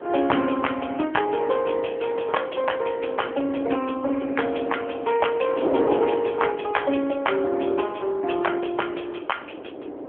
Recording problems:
telephone audio; 240 Hz to 3.3 kHz, AMR-NB
wind noise; below 580 Hz, SNR 9 dB

